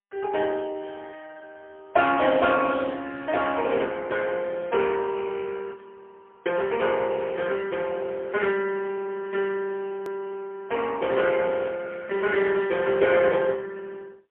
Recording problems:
phone line; 300 Hz to 2.8 kHz, AMR-NB, then MP3
hard cut with a click; at 10 s

